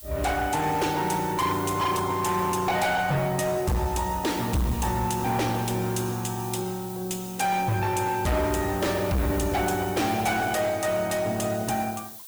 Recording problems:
codec artefacts; Opus, log-spectral distance 4 dB, nothing above 19 kHz
distorted audio; hard clipping, uneven, signal-to-distortion ratio 8 dB
hiss; SNR 14 dB

